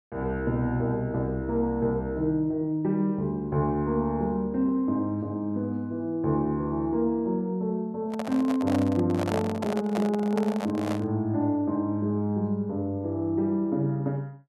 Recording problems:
microphone handling noise; from 8 to 11 s; peak 0 dB vs average level

